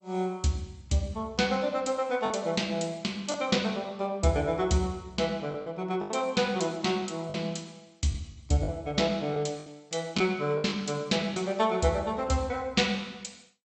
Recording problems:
lossy codec; MP2, log-spectral distance 3 dB, nothing above 8 kHz
packet loss; 4% of the sound replaced, filled with the last packet

